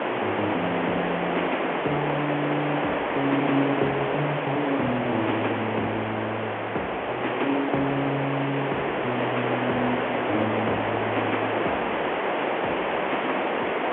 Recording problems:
telephone audio; 220 Hz to 3.6 kHz, G.711
background hiss; SNR -3 dB

